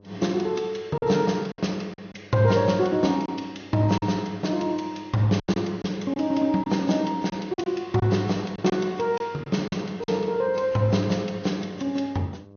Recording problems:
treble missing; nothing above 6.3 kHz
lossy codec; AAC, log-spectral distance 2 dB
electrical hum; 50 Hz, harmonics up to 1.2 kHz, SNR 26 dB
packet loss; 5% of the sound replaced, filled with silence

